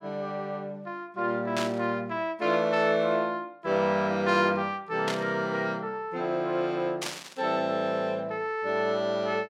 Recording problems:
burst of static; at 1.5 s, at 5 s and at 7 s; peak -1 dB vs average level

